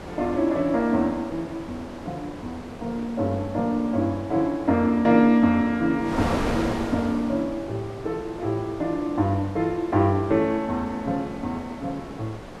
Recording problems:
wind on the microphone; below 970 Hz, SNR 11 dB

